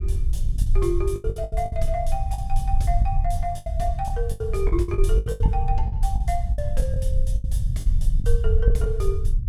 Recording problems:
low-frequency rumble; below 64 Hz, SNR -5 dB
lost packets; 14% of the sound replaced, filled with the last packet

